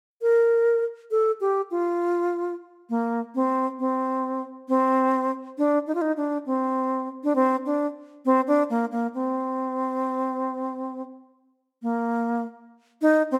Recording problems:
none

